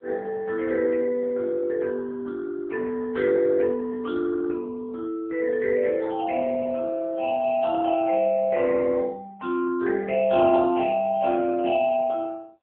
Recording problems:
phone line; 260 Hz to 2.6 kHz, AMR-NB

